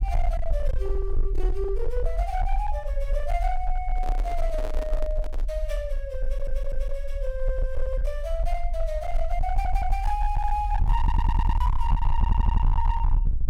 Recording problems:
distortion; hard clipping, signal-to-distortion ratio 8 dB
low-frequency rumble; below 46 Hz, strongest tone 20 Hz, SNR -3 dB
microphone handling noise; from 4 to 5.5 s; peak -1 dB vs average level
audio stuttering; 4 times, first at 6 s

